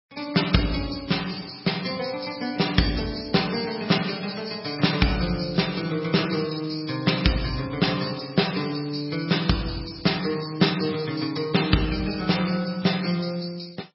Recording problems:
lossy codec; MP3, log-spectral distance 8 dB, nothing above 5.5 kHz

